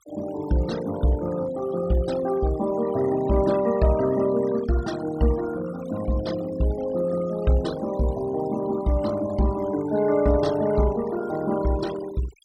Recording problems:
denoising artefacts; signal-to-artefact ratio 17 dB

